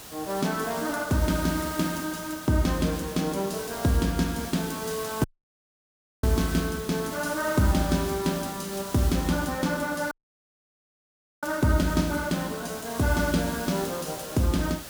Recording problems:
background hiss; slope -2 dB per octave, SNR 11 dB
audio cutting out; at 5 s for 1 s and at 10 s for 1.5 s

